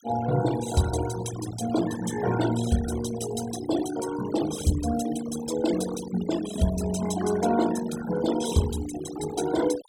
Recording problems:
noise reduction artefacts; signal-to-artefact ratio 10 dB

